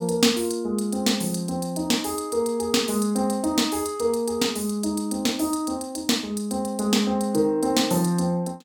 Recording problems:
none

